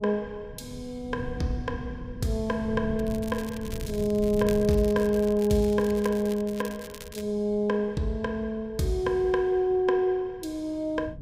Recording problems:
wind on the microphone; below 170 Hz, SNR 15 dB
crackling; from 3 to 7 s; loose cable, SNR 18 dB

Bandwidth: 15.5 kHz